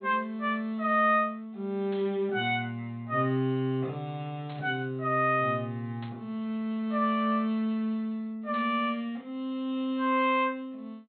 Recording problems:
low-pass filter; nothing above 4.2 kHz
static burst; 4 times, first at 2 s; peak -14 dB vs average level

